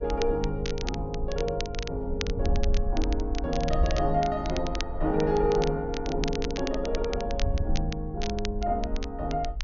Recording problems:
low-pass filter; nothing above 6.7 kHz
wind on the microphone; below 60 Hz, SNR 5 dB
crackle; vinyl, SNR 11 dB

